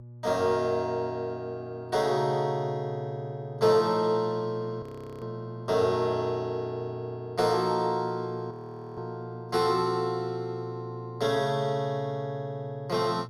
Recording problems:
electrical hum; 60 Hz, harmonics up to 600 Hz, SNR 14 dB
frozen audio; at 5 s and at 8.5 s

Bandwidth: 15.5 kHz